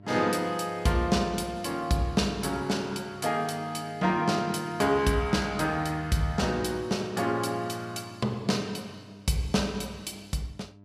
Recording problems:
electrical hum; 50 Hz, harmonics up to 1 kHz, SNR 22 dB

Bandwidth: 14.5 kHz